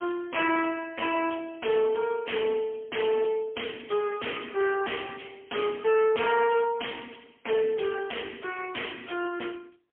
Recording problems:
telephone audio; 280 Hz to 2.8 kHz, AMR-NB, then MP3
distorted audio; hard clipping, signal-to-distortion ratio 6 dB

